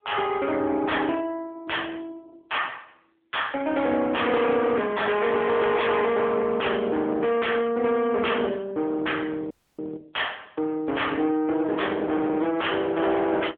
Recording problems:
phone line; 220 Hz to 3.4 kHz, AMR-NB
distortion; hard clipping, signal-to-distortion ratio 7 dB
dropout; at 9.5 s

